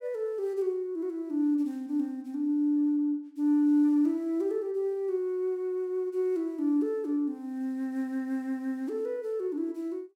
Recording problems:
none

